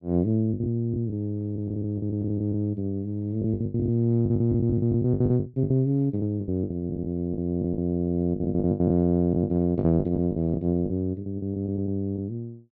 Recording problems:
lost packets; 16% of the sound replaced, filled with the last packet

